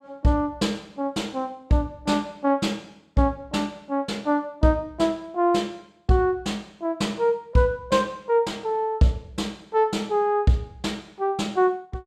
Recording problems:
none

